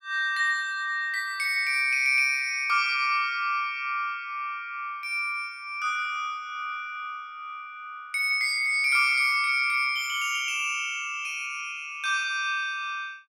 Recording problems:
none

